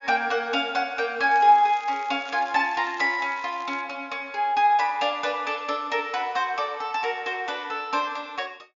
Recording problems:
treble cut off; nothing above 7.1 kHz
crackling; from 1 to 4 s; loose cable, SNR 24 dB

